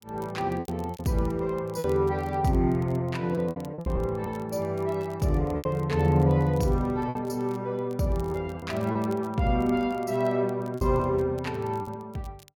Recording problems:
crackle; vinyl, SNR 28 dB
lost packets; 6% of the sound replaced, filled with repeated pitch periods

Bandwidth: 17 kHz